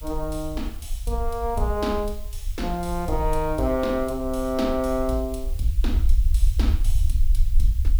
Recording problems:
background hiss; slope +3 dB per octave, SNR 20 dB
rumble; below 58 Hz, SNR 1 dB

